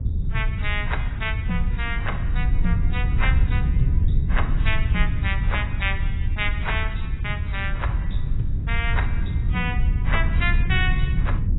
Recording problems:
codec artefacts; AAC, log-spectral distance 2 dB, nothing above 3.8 kHz
low-frequency rumble; below 90 Hz, SNR -4 dB

